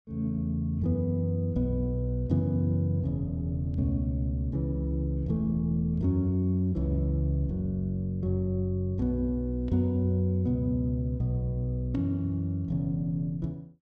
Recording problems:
none

